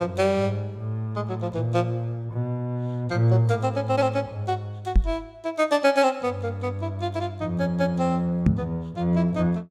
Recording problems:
knock on the microphone; at 5 s and at 8.5 s; peak +8 dB vs average level

